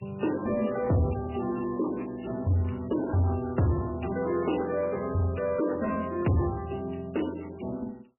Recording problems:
lossy compression; MP3, then MP3, log-spectral distance 6 dB, nothing above 2.7 kHz
distorted audio; soft clipping, signal-to-distortion ratio 10 dB

